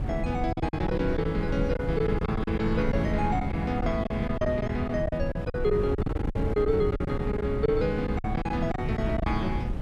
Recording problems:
wind on the microphone; below 150 Hz, SNR 4 dB
lost packets; 12% of the sound replaced, filled with silence

